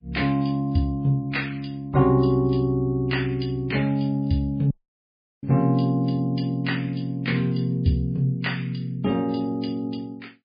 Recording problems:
codec artefacts; MP3, log-spectral distance 3 dB, nothing above 4.8 kHz
audio cutting out; at 4.5 s for 0.5 s

